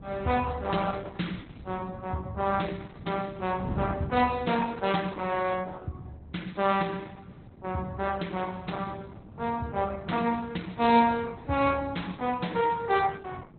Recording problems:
codec artefacts; Opus, log-spectral distance 4 dB, nothing above 4 kHz
wind noise; below 200 Hz, SNR 13 dB

